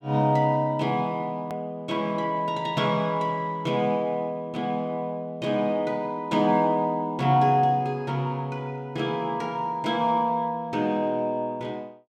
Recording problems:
edit click; at 1.5 s

